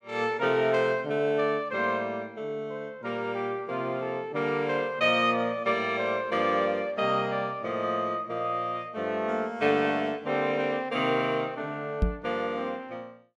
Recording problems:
knock on the microphone; at 12 s; peak +5 dB vs average level

